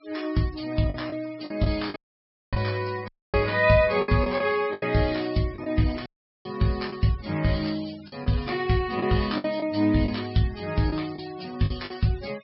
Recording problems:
treble missing; nothing above 5.4 kHz
denoising artefacts; signal-to-artefact ratio 20 dB
packet loss; 6% of the sound replaced, filled with the last packet
dropout; at 2 s for 0.5 s, at 3 s and at 6 s

